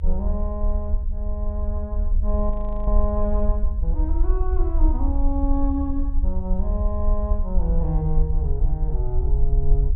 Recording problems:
treble cut off; nothing above 4 kHz
low-frequency rumble; below 54 Hz, SNR -5 dB
frozen audio; at 2.5 s

